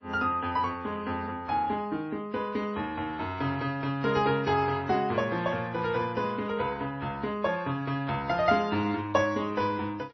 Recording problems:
lossy codec; MP3, then AAC, log-spectral distance 2 dB, nothing above 5.2 kHz

